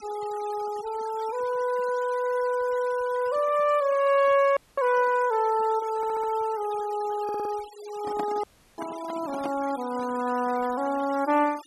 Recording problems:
noise reduction artefacts; signal-to-artefact ratio 19 dB
audio cutting out; at 4.5 s and at 8.5 s
stutter; at 6 s and at 7 s
handling noise; from 8 to 9.5 s; peak -4 dB vs average level

